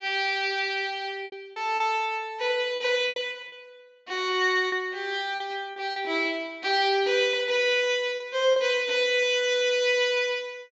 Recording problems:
low-pass filter; nothing above 7.5 kHz
lost packets; 5% of the sound replaced, filled with repeated pitch periods

